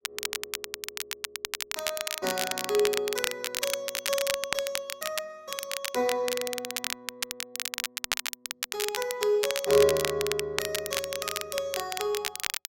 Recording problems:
crackle; vinyl, SNR 2 dB

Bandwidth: 16 kHz